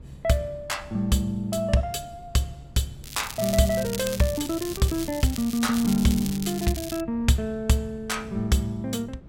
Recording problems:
wind on the microphone; below 200 Hz, SNR 18 dB
crackle; from 3 to 7 s; loose cable, SNR 10 dB

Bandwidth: 16 kHz